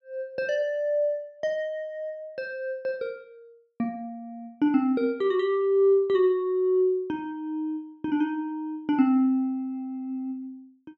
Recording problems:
none

